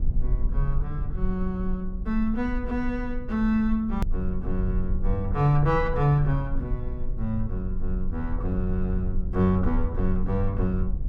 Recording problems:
rumble; below 52 Hz, strongest tone 20 Hz, SNR 5 dB
click at an edit; at 4 s

